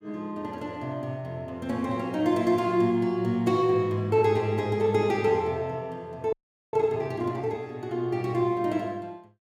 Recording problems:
audio freezing; at 6.5 s

